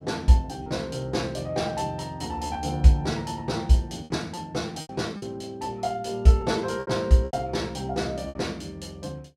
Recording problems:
packet loss; 6% of the sound replaced, filled with repeated pitch periods

